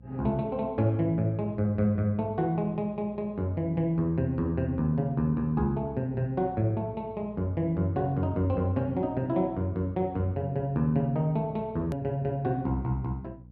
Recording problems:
hum; 60 Hz, harmonics up to 480 Hz, SNR 21 dB
hard cut with a click; at 12 s

